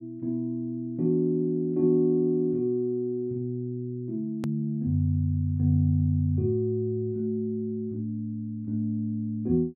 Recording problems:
edit click; at 4.5 s

